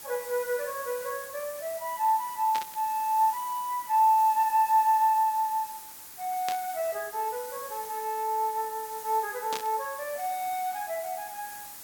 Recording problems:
hiss; slope 0 dB per octave, SNR 13 dB
static burst; at 2.5 s, at 6.5 s and at 9.5 s; peak -3 dB vs average level

